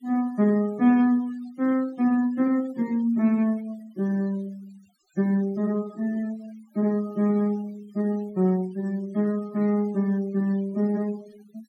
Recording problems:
noise reduction artefacts; signal-to-artefact ratio 24 dB

